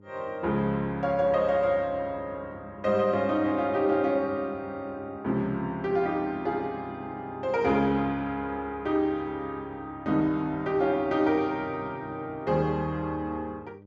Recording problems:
mains hum; 50 Hz, harmonics up to 900 Hz, SNR 23 dB

